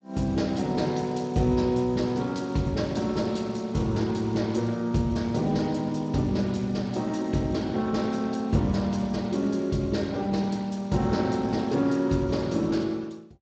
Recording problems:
codec artefacts; Speex, log-spectral distance 4 dB, nothing above 7.3 kHz

